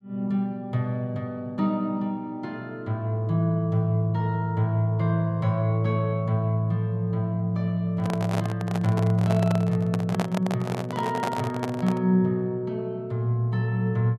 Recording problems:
microphone handling noise; from 8 to 12 s; peak 0 dB vs average level

